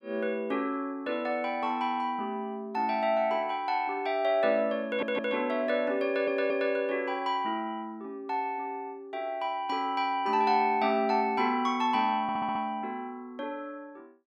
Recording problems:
stutter; at 5 s, at 6 s and at 12 s

